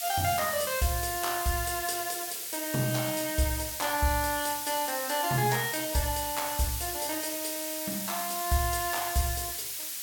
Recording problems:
hiss; slope +4 dB per octave, SNR 3 dB

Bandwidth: 17 kHz